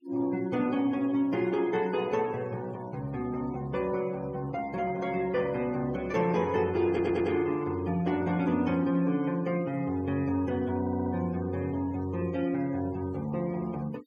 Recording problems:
denoising artefacts; signal-to-artefact ratio 22 dB
stutter; at 7 s and at 11 s

